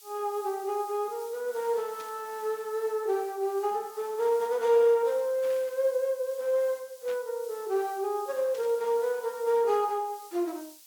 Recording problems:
background hiss; SNR 21 dB
static burst; 4 times, first at 2 s; peak -14 dB vs average level

